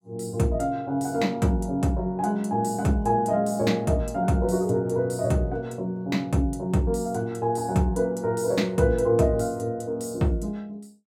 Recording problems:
none

